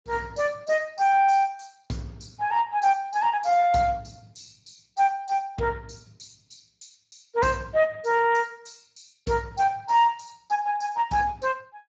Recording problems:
lossy codec; Speex, log-spectral distance 6 dB, nothing above 7.3 kHz

